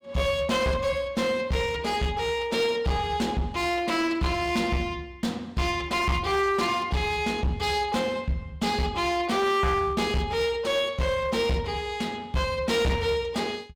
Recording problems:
distortion; hard clipping, uneven, signal-to-distortion ratio 10 dB

